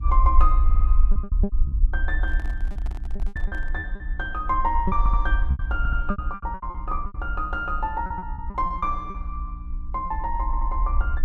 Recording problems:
hum; 60 Hz, harmonics up to 300 Hz, SNR 13 dB
low-frequency rumble; below 54 Hz, strongest tone 20 Hz, SNR -1 dB
packet loss; 12% of the sound replaced, filled with repeated pitch periods
stutter; 4 times, first at 0.5 s
microphone handling noise; from 2.5 to 3.5 s; peak -11 dB vs average level

